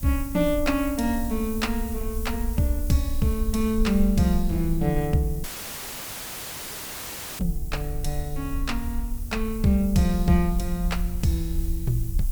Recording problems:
electrical hum; 60 Hz, harmonics up to 600 Hz, SNR 24 dB
hiss; SNR 15 dB
low-frequency rumble; below 58 Hz, SNR 6 dB
dropout; at 5.5 s for 2 s; filled with static

